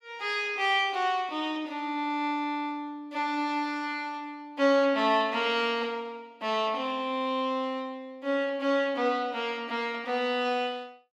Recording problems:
none

